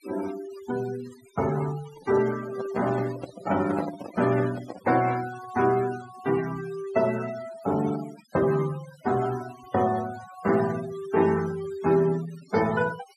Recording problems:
denoising artefacts; signal-to-artefact ratio 15 dB
handling noise; from 2 to 5 s; peak 0 dB vs average level

